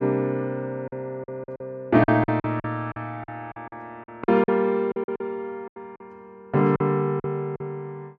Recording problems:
packet loss; 12% of the sound replaced, filled with silence

